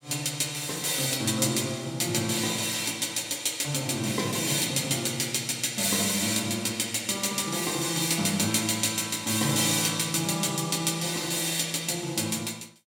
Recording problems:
none

